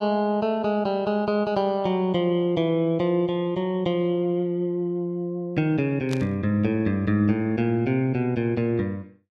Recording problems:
static burst; at 6 s; peak -7 dB vs average level

